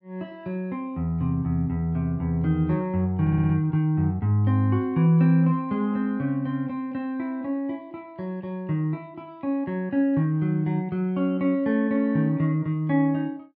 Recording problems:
stutter; at 3 s

